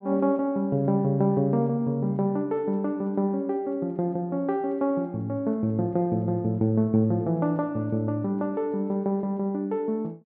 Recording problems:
none

